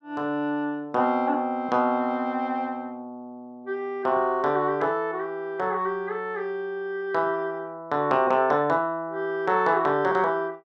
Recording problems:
none

